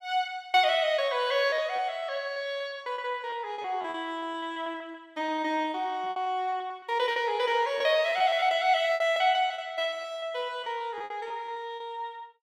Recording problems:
lost packets; 12% of the sound replaced, filled with repeated pitch periods

